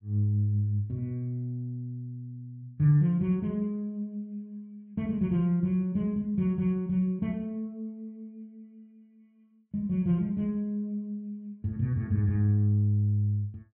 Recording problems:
treble missing; nothing above 5 kHz

